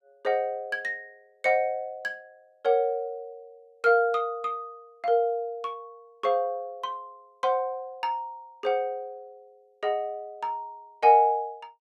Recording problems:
none

